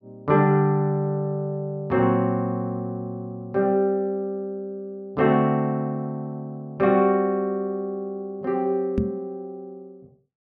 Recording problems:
knock on the microphone; at 9 s; peak +3 dB vs average level

